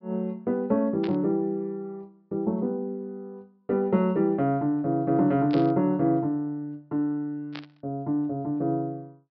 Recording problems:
low-pass filter; nothing above 5.5 kHz
burst of static; at 1 s, at 5.5 s and at 7.5 s; peak -8 dB vs average level

